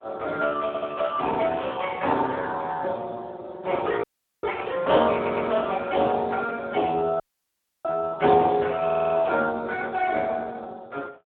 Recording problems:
telephone audio; 300 Hz to 2.2 kHz, Speex
stutter; at 0.5 s, at 5 s and at 9 s
dropout; at 4 s and at 7 s for 0.5 s

